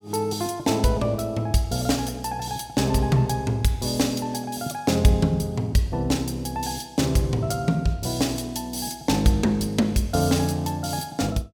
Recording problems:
none

